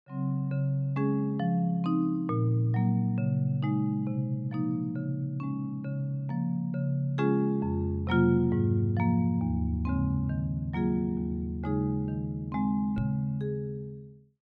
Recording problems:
knock on the microphone; at 13 s; peak +1 dB vs average level

